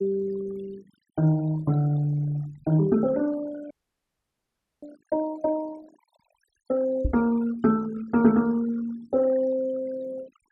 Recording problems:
denoising artefacts; signal-to-artefact ratio 20 dB
audio freezing; at 3.5 s for 1 s
microphone bump; at 7 s; peak +3 dB vs average level

